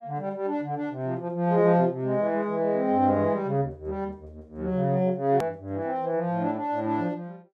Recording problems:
edit click; at 5.5 s

